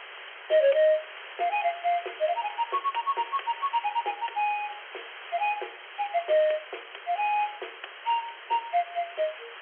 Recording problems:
telephone audio; 340 Hz to 3.3 kHz, G.711
hiss; SNR 14 dB
crackling; from 2.5 to 4.5 s; loose cable, SNR 29 dB

